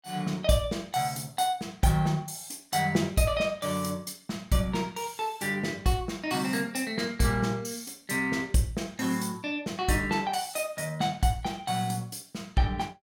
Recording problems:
none

